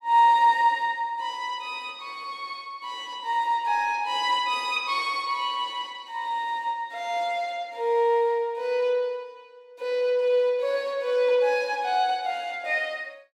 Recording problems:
none

